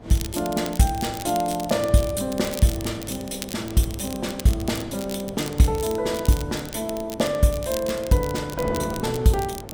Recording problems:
wind on the microphone; below 520 Hz, SNR 14 dB
crackling; vinyl, SNR 13 dB

